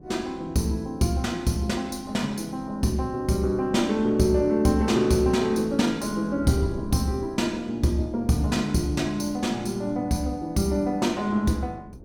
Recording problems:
wind on the microphone; below 300 Hz, SNR 18 dB

